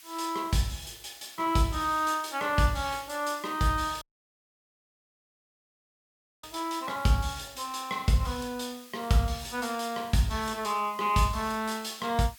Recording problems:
background hiss; SNR 20 dB
audio cutting out; at 4 s for 2.5 s

